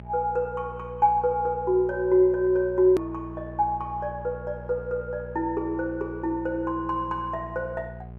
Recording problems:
hum; 60 Hz, harmonics up to 840 Hz, SNR 15 dB
click at an edit; at 3 s

